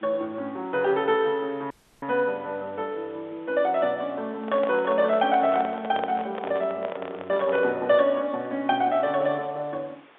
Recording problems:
telephone audio; 240 Hz to 4 kHz, G.711
hiss; SNR 28 dB
audio cutting out; at 1.5 s
microphone handling noise; from 4.5 to 8 s; peak -3 dB vs average level

